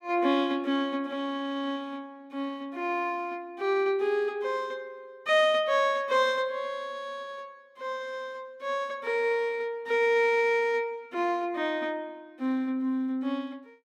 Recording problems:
none

